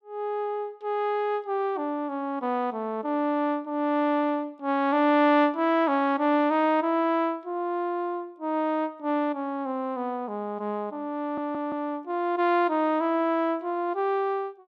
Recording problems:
audio stuttering; at 11 s

